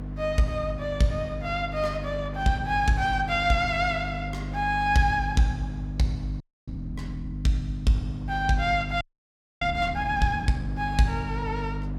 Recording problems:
electrical hum; 50 Hz, harmonics up to 300 Hz, SNR 8 dB
wind noise; below 880 Hz, SNR 22 dB
frozen audio; at 6.5 s and at 9 s for 0.5 s

